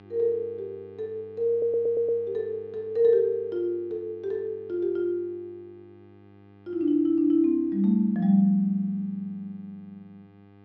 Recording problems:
hum; 50 Hz, harmonics up to 2 kHz, SNR 27 dB
stutter; at 1.5 s

